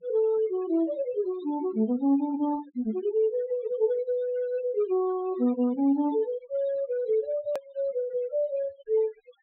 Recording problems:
treble cut off; nothing above 4 kHz
denoising artefacts; signal-to-artefact ratio 22 dB
hard cut with a click; at 7.5 s

